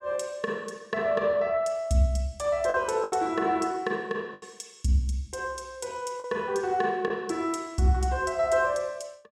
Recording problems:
lost packets; 3% of the sound replaced, filled with the last packet

